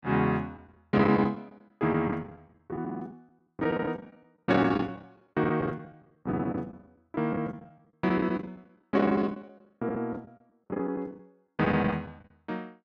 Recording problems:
lost packets; 15% of the sound replaced, filled with the last packet

